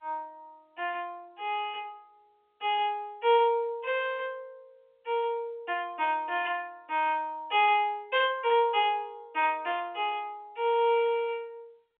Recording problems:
phone line; 260 Hz to 3.6 kHz, G.711

